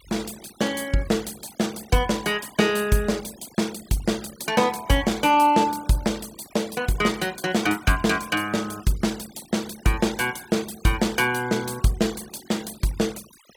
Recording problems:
noise reduction artefacts; signal-to-artefact ratio 19 dB

